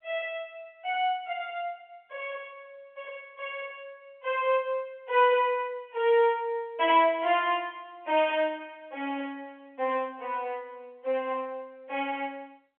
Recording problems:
phone line; 340 Hz to 3.3 kHz, G.711

